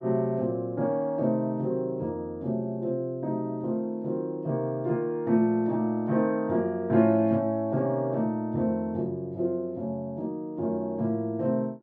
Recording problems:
none

